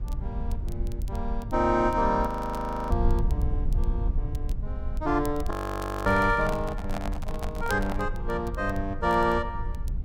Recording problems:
low-frequency rumble; below 70 Hz, SNR 6 dB
crackle; vinyl, SNR 25 dB
audio freezing; at 2.5 s for 0.5 s and at 5.5 s for 0.5 s
handling noise; from 6 to 8 s; peak -4 dB vs average level

